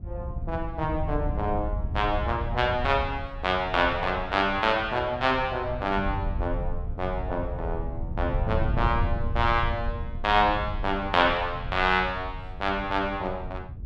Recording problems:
wind on the microphone; below 100 Hz, SNR 7 dB

